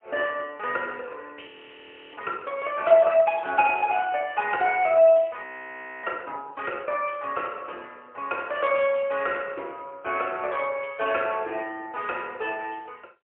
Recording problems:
phone line; 340 Hz to 3.2 kHz, AMR-NB, then MP3
audio freezing; at 1.5 s for 0.5 s and at 5.5 s for 0.5 s

